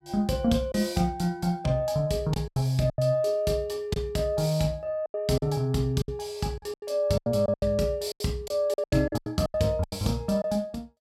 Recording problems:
lost packets; 11% of the sound replaced, filled with silence

